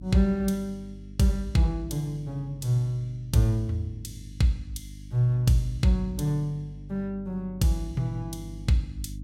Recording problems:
hum; 50 Hz, harmonics up to 300 Hz, SNR 15 dB

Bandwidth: 16 kHz